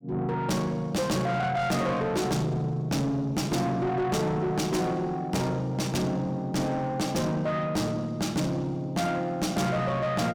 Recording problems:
distortion; soft clipping, signal-to-distortion ratio 7 dB

